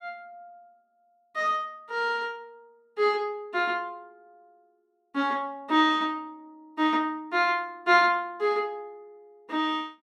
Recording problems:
none

